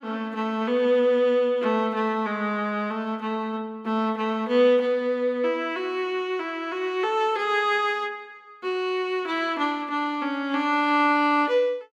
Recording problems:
none

